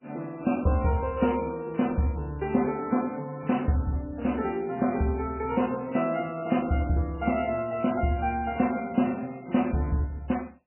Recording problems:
codec artefacts; MP3, log-spectral distance 4 dB, nothing above 2.8 kHz

